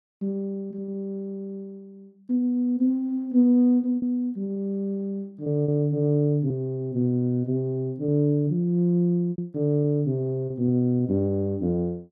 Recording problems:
lost packets; 4% of the sound replaced, filled with repeated pitch periods

